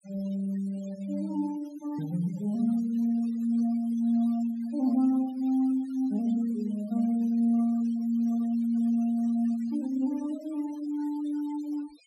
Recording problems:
noise reduction artefacts; signal-to-artefact ratio 23 dB

